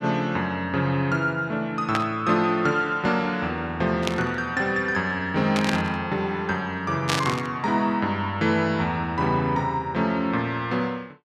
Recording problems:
burst of static; 4 times, first at 2 s; peak +3 dB vs average level

